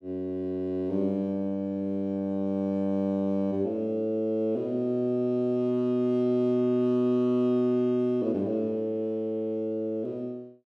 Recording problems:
none

